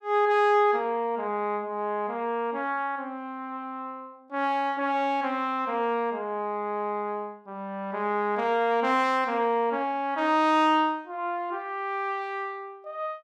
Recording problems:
none

